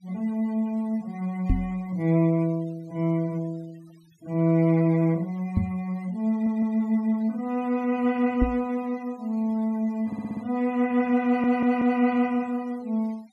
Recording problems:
noise reduction artefacts; signal-to-artefact ratio 27 dB
microphone thump; at 1.5 s, at 5.5 s and at 8.5 s; peak +5 dB vs average level
stutter; at 6.5 s, at 10 s and at 11 s

